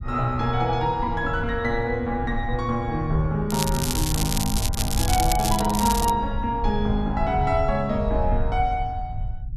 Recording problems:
low-frequency rumble; below 86 Hz, SNR 6 dB
crackling; from 3.5 to 6 s; loose cable, SNR 4 dB

